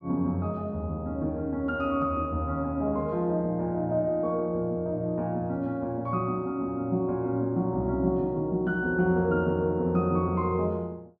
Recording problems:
none

